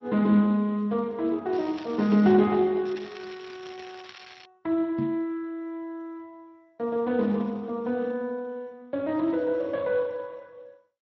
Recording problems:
lossy codec; MP2, then Speex, log-spectral distance 4 dB
crackling; at 1.5 s and from 3 to 4.5 s; loose cable, SNR 20 dB
microphone bump; at 5 s; peak -2 dB vs average level

